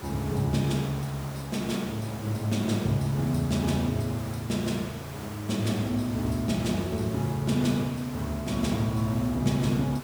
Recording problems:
hiss; slope -5 dB per octave, SNR 13 dB

